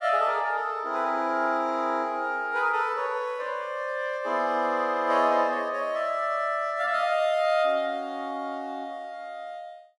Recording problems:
none

